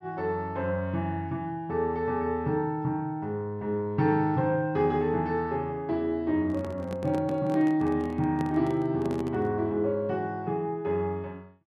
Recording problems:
handling noise; from 6.5 to 9.5 s; peak -5 dB vs average level

